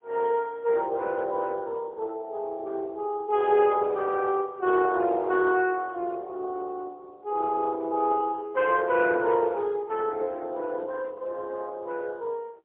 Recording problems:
phone line; 280 Hz to 3.6 kHz, AMR-NB, then MP3

